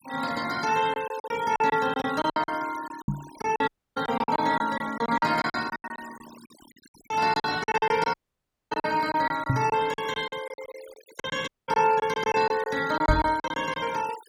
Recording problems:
noise reduction artefacts; signal-to-artefact ratio 17 dB
packet loss; 15% of the sound replaced, filled with silence
microphone thump; at 3 s, at 9.5 s and at 13 s; peak +5 dB vs average level
audio cutting out; at 3.5 s, at 8 s for 0.5 s and at 11 s

